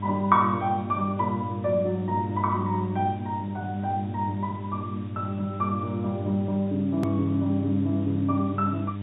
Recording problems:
low-pass filter; nothing above 4 kHz
electrical hum; 50 Hz, harmonics up to 700 Hz, SNR 5 dB
background hiss; SNR 27 dB
edit click; at 7 s

